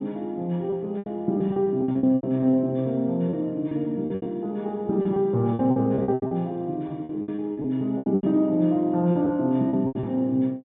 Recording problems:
treble cut off; nothing above 4 kHz
lost packets; 15% of the sound replaced, filled with repeated pitch periods

